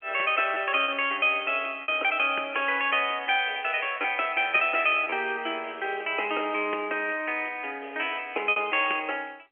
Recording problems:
phone line; 280 Hz to 3.2 kHz, G.711
lost packets; 3% of the sound replaced, filled with repeated pitch periods

